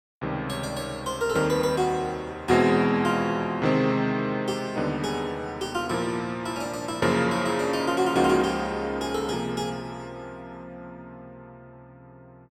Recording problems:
none

